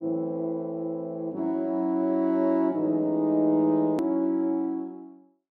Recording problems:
hard cut with a click; at 4 s

